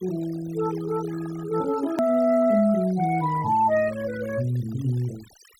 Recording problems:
noise reduction artefacts; signal-to-artefact ratio 20 dB
click at an edit; at 2 s

